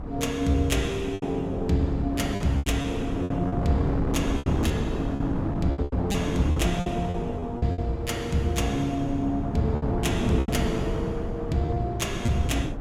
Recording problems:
wind on the microphone; below 320 Hz, SNR 4 dB
packet loss; 9% of the sound replaced, filled with repeated pitch periods

